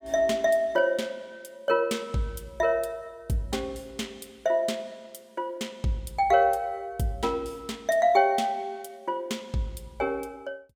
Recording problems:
none

